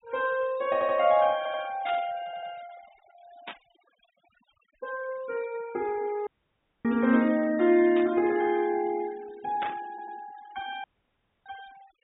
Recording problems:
treble missing; nothing above 4 kHz
noise reduction artefacts; signal-to-artefact ratio 23 dB
audio stuttering; 4 times, first at 0.5 s
burst of static; 4 times, first at 2 s; peak -6 dB vs average level
dropout; at 6.5 s for 0.5 s and at 11 s for 0.5 s

